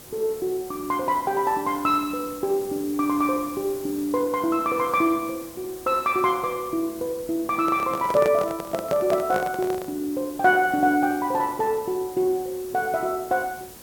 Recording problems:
background hiss; SNR 17 dB
microphone handling noise; from 7.5 to 10 s; peak -1 dB vs average level

